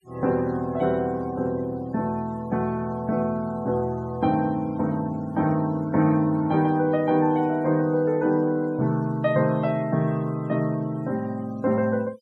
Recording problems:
noise reduction artefacts; signal-to-artefact ratio 26 dB

